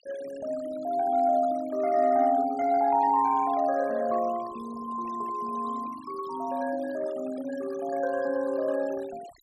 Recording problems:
denoising artefacts; signal-to-artefact ratio 20 dB

